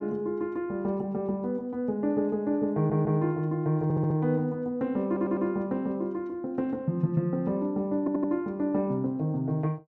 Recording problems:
audio stuttering; 4 times, first at 3 s

